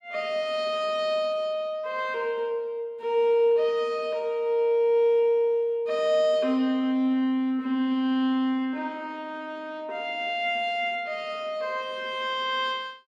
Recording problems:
none

